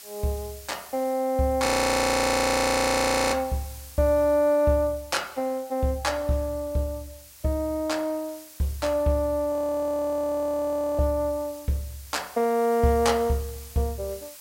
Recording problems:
background hiss; slope +2 dB per octave, SNR 20 dB
audio freezing; at 1.5 s for 1.5 s and at 9.5 s for 1.5 s

